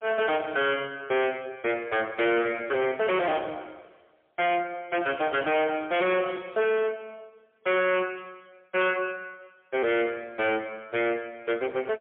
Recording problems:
phone line; 240 Hz to 3.4 kHz, AMR-NB, then MP3
distorted audio; hard clipping, signal-to-distortion ratio 5 dB

